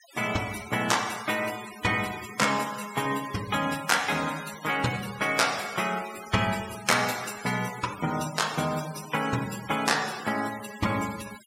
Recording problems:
denoising artefacts; signal-to-artefact ratio 12 dB

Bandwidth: 16 kHz